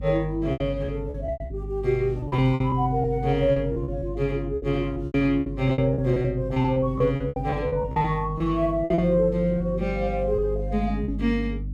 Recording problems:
hum; 50 Hz, harmonics up to 300 Hz, SNR 10 dB
lost packets; 13% of the sound replaced, filled with repeated pitch periods

